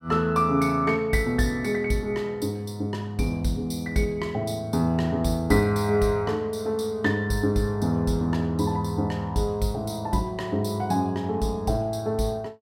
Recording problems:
none

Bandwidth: 16 kHz